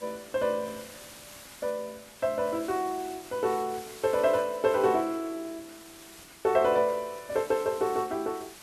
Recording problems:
hiss; slope 0 dB per octave, SNR 18 dB

